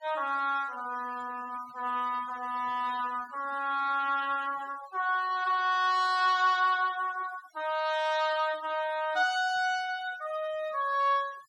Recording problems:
noise reduction artefacts; signal-to-artefact ratio 22 dB

